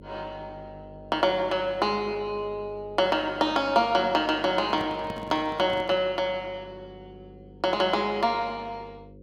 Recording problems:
hum; 50 Hz, harmonics up to 550 Hz, SNR 22 dB
handling noise; from 4.5 to 6 s; peak -7 dB vs average level

